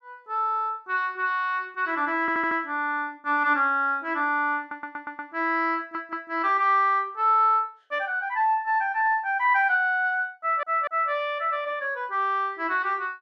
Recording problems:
stutter; 4 times, first at 2 s

